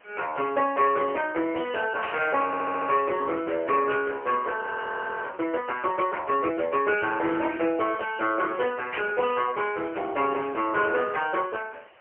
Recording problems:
phone line; 300 Hz to 3.1 kHz, AMR-NB, then MP3
background hiss; SNR 28 dB
burst of static; at 2 s, at 4 s and at 9 s; peak -2 dB vs average level
audio stuttering; at 2.5 s
audio freezing; at 4.5 s for 0.5 s

